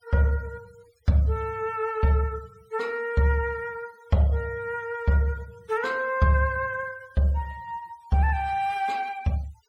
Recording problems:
denoising artefacts; signal-to-artefact ratio 26 dB

